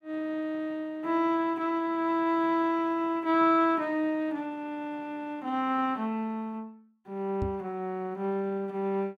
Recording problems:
microphone bump; at 7.5 s; peak 0 dB vs average level

